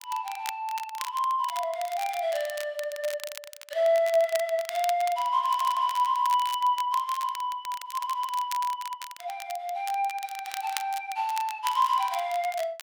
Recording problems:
crackle; vinyl, SNR 13 dB
stutter; at 5.5 s

